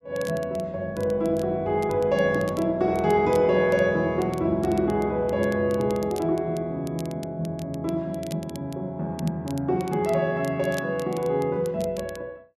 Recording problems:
crackle; vinyl, SNR 22 dB

